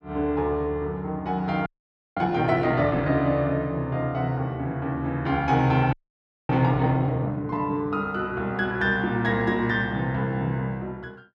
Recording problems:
frozen audio; at 1.5 s for 0.5 s and at 6 s for 0.5 s

